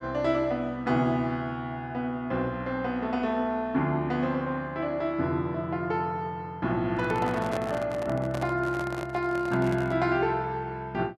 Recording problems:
handling noise; from 7 to 10 s; peak -2 dB vs average level

